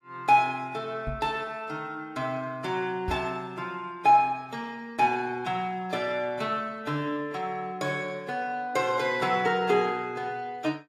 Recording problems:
lossy codec; AAC, log-spectral distance 2 dB
microphone thump; at 1 s and at 3 s; peak -2 dB vs average level

